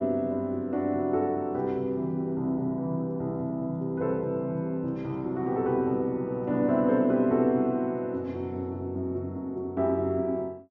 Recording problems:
treble missing; nothing above 7.1 kHz

